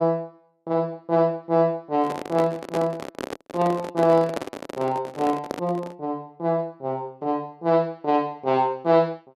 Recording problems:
microphone handling noise; from 2 to 6 s; peak -1 dB vs average level

